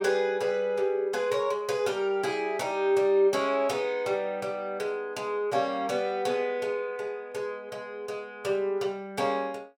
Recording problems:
none

